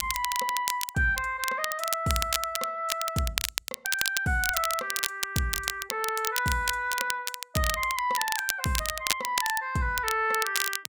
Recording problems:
crackling; vinyl, SNR 2 dB

